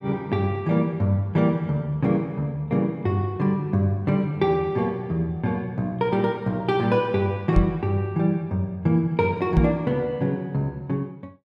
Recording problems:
microphone thump; at 7.5 s and at 9.5 s; peak +6 dB vs average level

